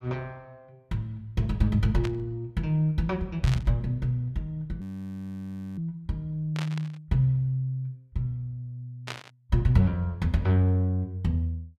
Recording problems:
static burst; 4 times, first at 2 s; peak -3 dB vs average level
audio freezing; at 5 s for 1 s

